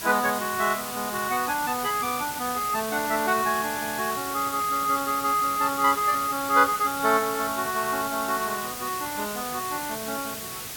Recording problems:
hiss; SNR 7 dB

